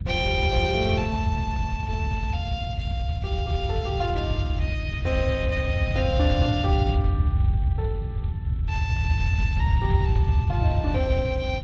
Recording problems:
lossy codec; Speex, log-spectral distance 2 dB
low-frequency rumble; below 110 Hz, SNR -3 dB

